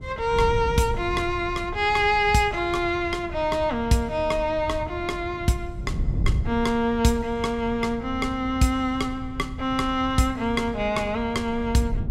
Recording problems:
wind on the microphone; below 110 Hz, SNR 10 dB

